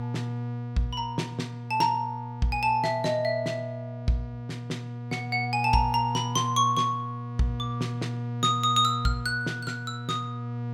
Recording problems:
hum; 60 Hz, harmonics up to 1.2 kHz, SNR 7 dB

